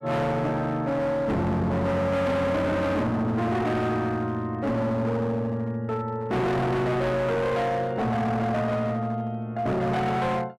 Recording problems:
distortion; hard clipping, signal-to-distortion ratio 7 dB

